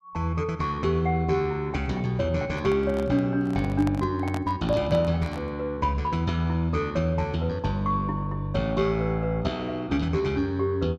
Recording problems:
microphone handling noise; from 2.5 to 5.5 s; peak -4 dB vs average level

